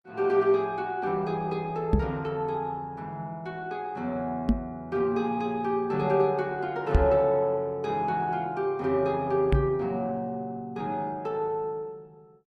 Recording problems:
codec artefacts; Opus, log-spectral distance 2 dB
microphone bump; 4 times, first at 2 s; peak +9 dB vs average level

